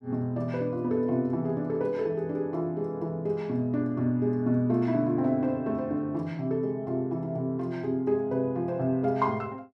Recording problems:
none

